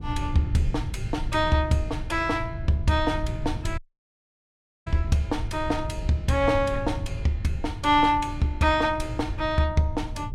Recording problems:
rumble; below 110 Hz, SNR 8 dB
dropout; at 4 s for 1 s

